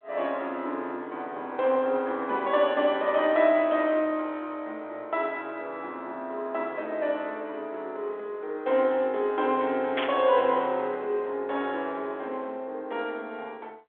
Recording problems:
telephone audio; 300 Hz to 3.6 kHz, G.726
burst of static; at 10 s; peak +2 dB vs average level

